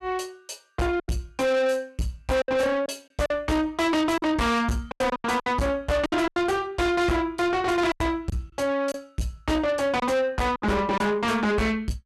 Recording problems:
distortion; soft clipping, signal-to-distortion ratio 7 dB
packet loss; 8% of the sound replaced, filled with silence

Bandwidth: 13 kHz